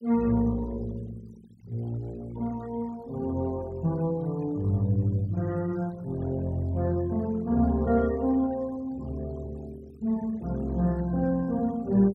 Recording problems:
noise reduction artefacts; signal-to-artefact ratio 25 dB

